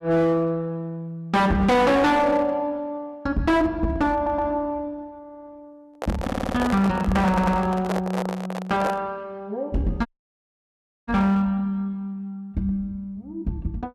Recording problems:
distortion; hard clipping, uneven, signal-to-distortion ratio 7 dB
audio stuttering; 4 times, first at 4 s
handling noise; from 6 to 9 s; peak +1 dB vs average level
audio cutting out; at 10 s for 1 s

